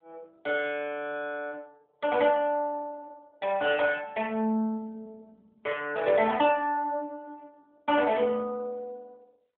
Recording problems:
phone line; 260 Hz to 3.3 kHz, AMR-NB

